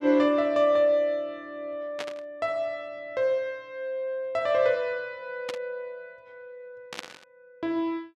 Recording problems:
static burst; at 2 s, at 5.5 s and at 7 s; peak -3 dB vs average level

